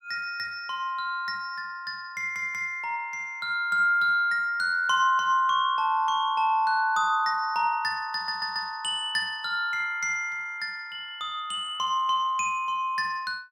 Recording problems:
stutter; at 2 s and at 8 s

